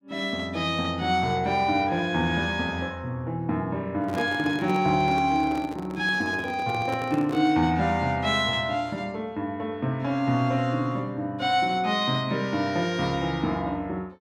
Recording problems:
handling noise; from 4 to 7.5 s; peak -3 dB vs average level

